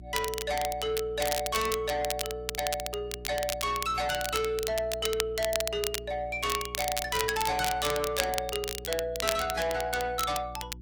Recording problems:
lossy compression; AAC, log-spectral distance 2 dB, nothing above 15.1 kHz
distortion; soft clipping, signal-to-distortion ratio 8 dB
hum; 60 Hz, harmonics up to 360 Hz, SNR 15 dB
crackling; vinyl, SNR 5 dB

